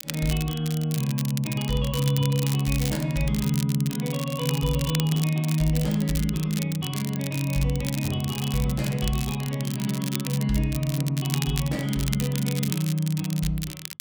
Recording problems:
crackling; vinyl, SNR 10 dB

